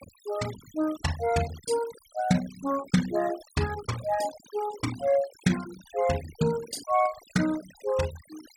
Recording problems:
denoising artefacts; signal-to-artefact ratio 15 dB

